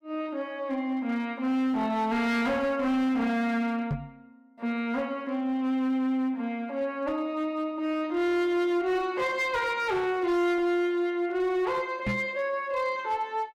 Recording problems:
distortion; hard clipping, uneven, signal-to-distortion ratio 11 dB
microphone bump; at 4 s and at 12 s; peak +2 dB vs average level

